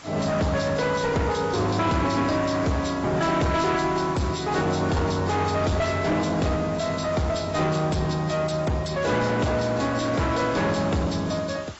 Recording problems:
lossy compression; AAC, log-spectral distance 7 dB, nothing above 7.8 kHz
distorted audio; soft clipping, signal-to-distortion ratio 7 dB
background hiss; SNR 18 dB

